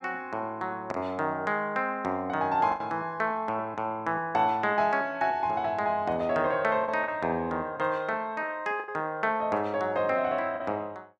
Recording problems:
lost packets; 3% of the sound replaced, filled with the last packet

